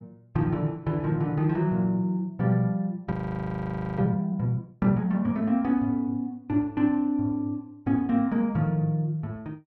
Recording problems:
audio freezing; at 3 s for 1 s

